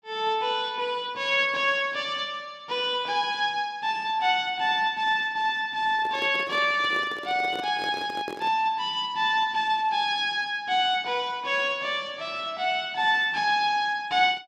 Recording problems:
microphone handling noise; from 6 to 8.5 s; peak -6 dB vs average level

